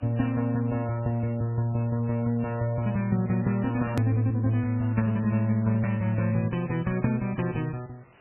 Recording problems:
lossy codec; MP3, log-spectral distance 7 dB, nothing above 13.1 kHz
background hiss; SNR 29 dB
hard cut with a click; at 4 s

